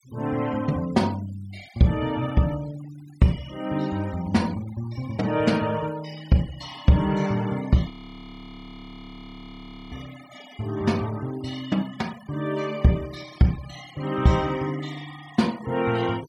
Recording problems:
denoising artefacts; signal-to-artefact ratio 20 dB
frozen audio; at 8 s for 2 s

